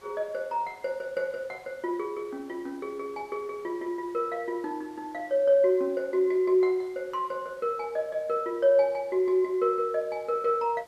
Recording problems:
hiss; slope -3 dB per octave, SNR 28 dB

